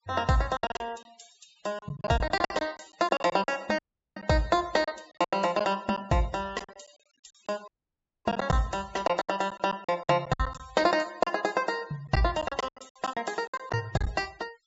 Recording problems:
treble cut off; nothing above 8 kHz
noise reduction artefacts; signal-to-artefact ratio 23 dB
lost packets; 13% of the sound replaced, filled with silence
dropout; at 4 s and at 7.5 s for 0.5 s

